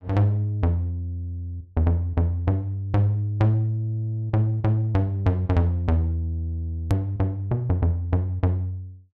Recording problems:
click at an edit; at 7 s

